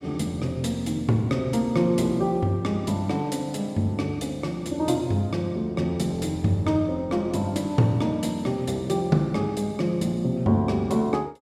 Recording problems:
none

